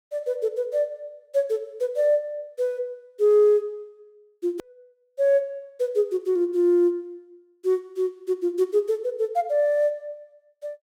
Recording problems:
hard cut with a click; at 4.5 s

